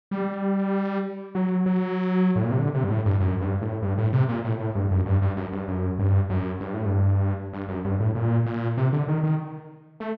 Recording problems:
none

